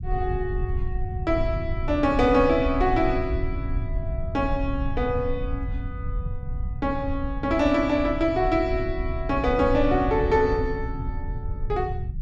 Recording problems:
rumble; below 90 Hz, SNR 7 dB

